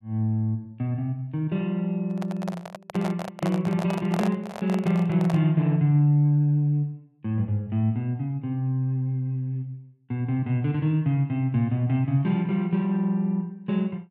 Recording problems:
handling noise; from 2 to 5.5 s; peak -1 dB vs average level

